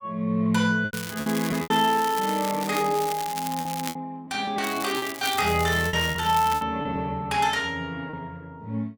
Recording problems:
lost packets; 7% of the sound replaced, filled with repeated pitch periods
crackle; from 1 to 4 s and from 4.5 to 6.5 s; loose cable, SNR 10 dB

